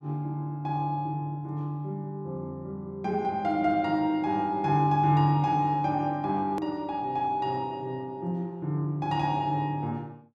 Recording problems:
click at an edit; at 6.5 s

